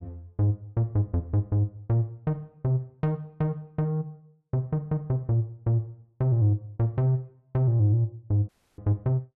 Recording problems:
dropout; at 8.5 s

